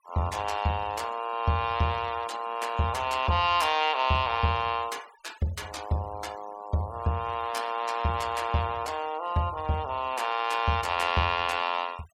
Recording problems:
noise reduction artefacts; signal-to-artefact ratio 20 dB

